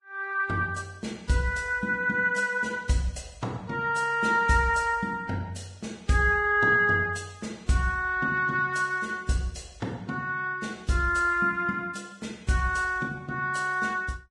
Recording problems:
codec artefacts; Vorbis, log-spectral distance 3 dB

